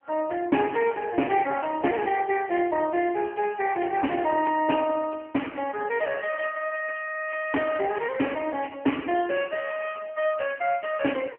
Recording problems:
telephone audio; 190 Hz to 3 kHz, AMR-NB

